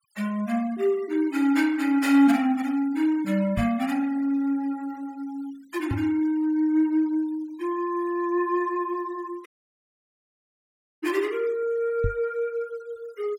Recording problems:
denoising artefacts; signal-to-artefact ratio 24 dB
knock on the microphone; at 3.5 s, at 6 s and at 12 s; peak +1 dB vs average level
dropout; at 9.5 s for 1.5 s

